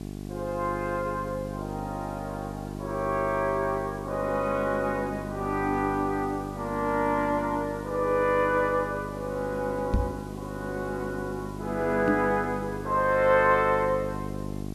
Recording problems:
electrical hum; 50 Hz, harmonics up to 1.1 kHz, SNR 9 dB
background hiss; slope +1 dB per octave, SNR 25 dB
microphone thump; at 10 s and at 12 s; peak +5 dB vs average level

